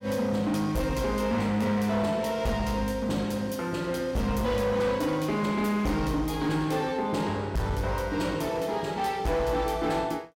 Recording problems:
distortion; hard clipping, signal-to-distortion ratio 11 dB

